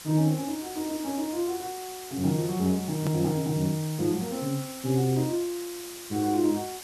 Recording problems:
background hiss; slope 0 dB per octave, SNR 12 dB
click at an edit; at 3 s

